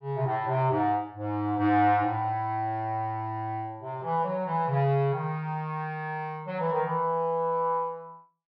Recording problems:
low-pass filter; nothing above 5.4 kHz

